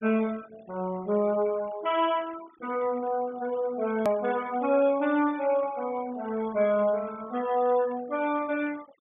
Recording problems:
treble missing; nothing above 3.5 kHz
noise reduction artefacts; signal-to-artefact ratio 20 dB
click at an edit; at 4 s

